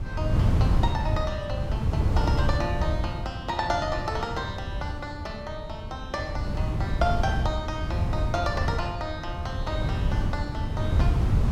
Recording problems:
wind on the microphone; below 130 Hz, SNR -4 dB

